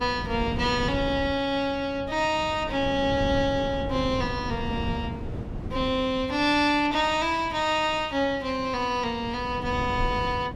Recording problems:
wind on the microphone; below 240 Hz, SNR 10 dB

